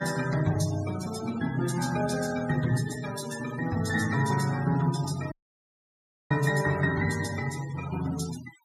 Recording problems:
noise reduction artefacts; signal-to-artefact ratio 13 dB
dropout; at 5.5 s for 1 s

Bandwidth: 15.5 kHz